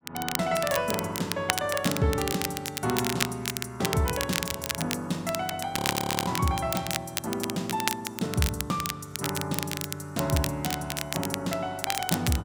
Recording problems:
crackle; vinyl, SNR 2 dB
frozen audio; at 6 s for 0.5 s

